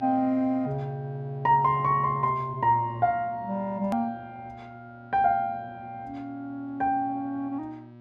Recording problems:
electrical hum; 60 Hz, harmonics up to 1.9 kHz, SNR 20 dB
click at an edit; at 4 s

